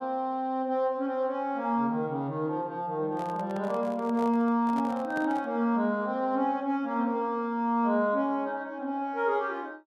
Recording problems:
microphone handling noise; from 3 to 5.5 s; peak -8 dB vs average level

